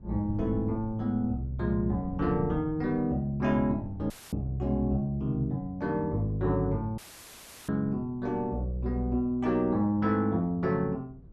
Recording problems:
wind on the microphone; below 160 Hz, SNR 16 dB
dropout; at 4 s and at 7 s for 0.5 s

